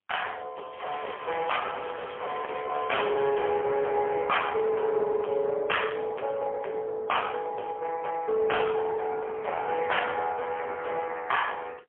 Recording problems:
phone line; 340 Hz to 3.3 kHz, AMR-NB, then MP3
distorted audio; hard clipping, signal-to-distortion ratio 10 dB
crackle; from 0.5 to 3.5 s; loose cable, SNR 17 dB

